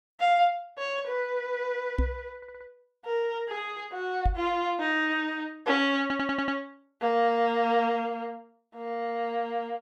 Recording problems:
knock on the microphone; at 2 s and at 4.5 s; peak +4 dB vs average level
stutter; at 2.5 s and at 6 s

